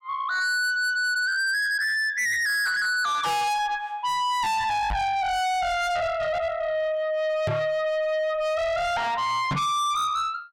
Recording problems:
distortion; soft clipping, signal-to-distortion ratio 6 dB
microphone bump; at 5 s, at 7.5 s and at 9.5 s; peak +3 dB vs average level

